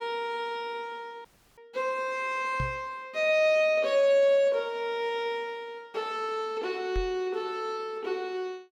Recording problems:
dropout; at 1.5 s
knock on the microphone; at 2.5 s and at 7 s; peak -1 dB vs average level

